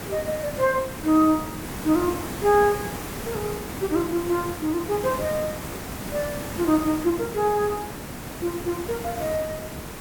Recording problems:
background hiss; slope -5 dB per octave, SNR 8 dB

